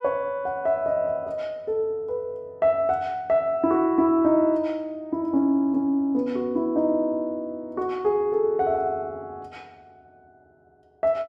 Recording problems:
none

